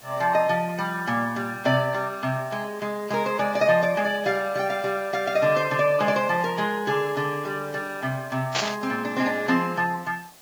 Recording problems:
lossy compression; Vorbis, log-spectral distance 3 dB
hiss; SNR 23 dB
static burst; at 8.5 s; peak +4 dB vs average level

